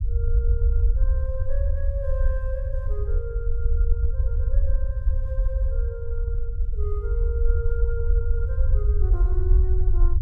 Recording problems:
low-frequency rumble; below 64 Hz, SNR -13 dB

